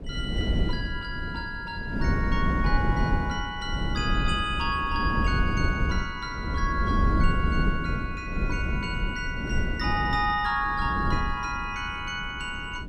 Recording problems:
wind noise; below 190 Hz, SNR 0 dB

